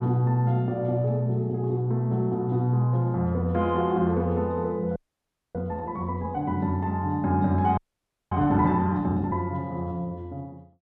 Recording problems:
audio freezing; at 5 s for 0.5 s and at 8 s for 0.5 s

